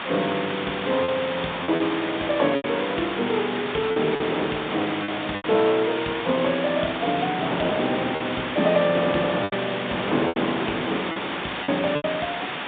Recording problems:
phone line; 150 Hz to 3.7 kHz, G.726
hiss; SNR 5 dB
wind noise; below 840 Hz, SNR 8 dB
lost packets; 6% of the sound replaced, filled with repeated pitch periods

